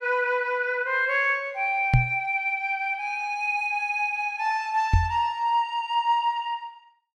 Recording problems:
knock on the microphone; at 2 s and at 5 s; peak +8 dB vs average level

